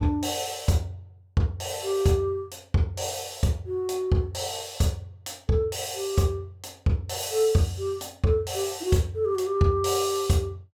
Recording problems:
none

